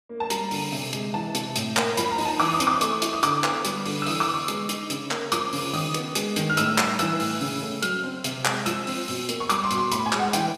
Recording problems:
none

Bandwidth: 15 kHz